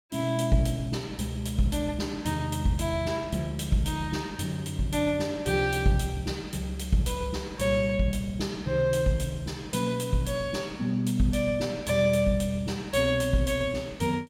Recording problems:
none

